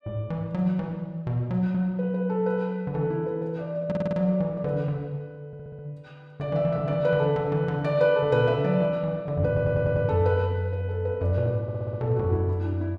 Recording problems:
stutter; 4 times, first at 4 s

